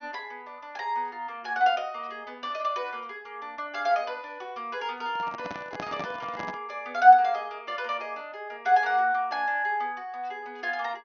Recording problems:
treble missing; nothing above 6.5 kHz
handling noise; from 5 to 6.5 s; peak -5 dB vs average level

